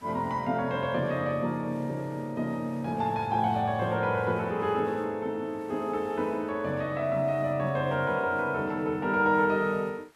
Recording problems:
background hiss; SNR 29 dB

